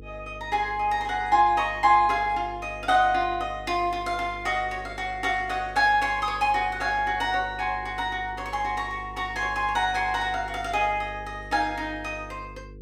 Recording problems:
hum; 50 Hz, harmonics up to 500 Hz, SNR 18 dB

